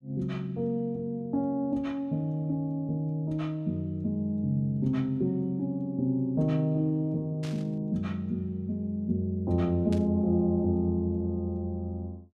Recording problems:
static burst; at 7.5 s and at 10 s; peak -11 dB vs average level

